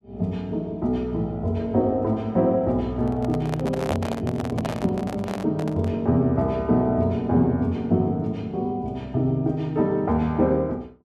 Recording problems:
handling noise; from 3 to 6 s; peak +1 dB vs average level

